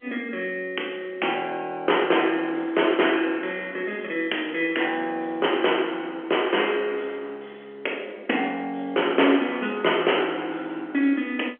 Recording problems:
telephone audio; 240 Hz to 3.2 kHz, G.711

